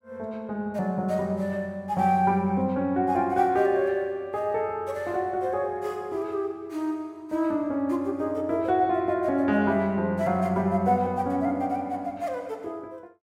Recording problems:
none

